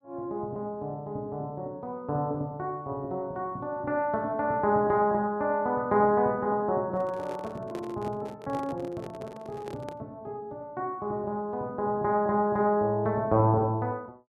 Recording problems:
handling noise; from 7 to 10 s; peak -7 dB vs average level

